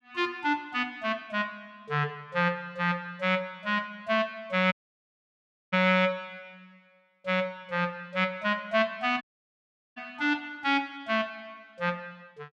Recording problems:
dropout; at 4.5 s for 1 s and at 9 s for 1 s

